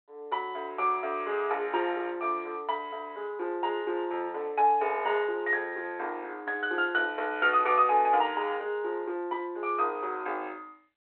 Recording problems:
telephone audio; 370 Hz to 3.3 kHz, G.726

